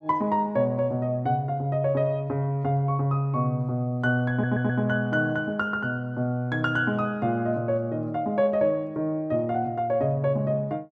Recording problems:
audio stuttering; at 4.5 s

